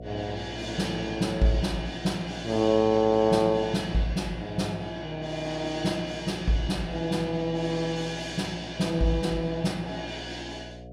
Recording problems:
electrical hum; 60 Hz, harmonics up to 720 Hz, SNR 14 dB

